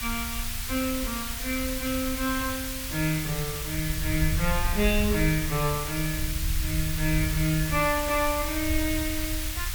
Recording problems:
background hiss; SNR 3 dB
wind on the microphone; below 76 Hz, SNR 6 dB

